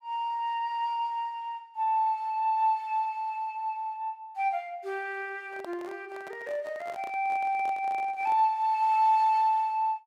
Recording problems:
microphone handling noise; from 5.5 to 8.5 s; peak -9 dB vs average level

